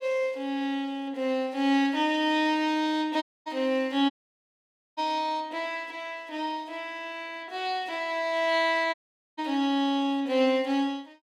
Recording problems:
dropout; at 3 s, at 4 s for 1 s and at 9 s

